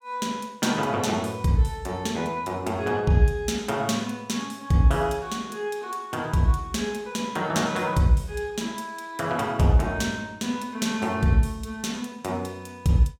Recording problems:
none

